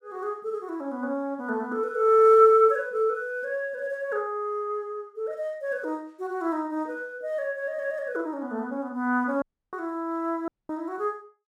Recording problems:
audio cutting out; at 9.5 s and at 10 s

